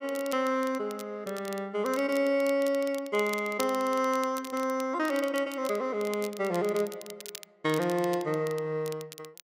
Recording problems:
crackling; vinyl, SNR 16 dB

